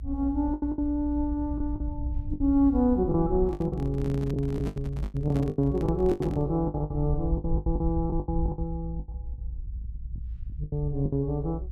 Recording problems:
low-frequency rumble; below 66 Hz, SNR 7 dB
packet loss; 15% of the sound replaced, filled with the last packet
handling noise; from 3.5 to 6.5 s; peak -3 dB vs average level

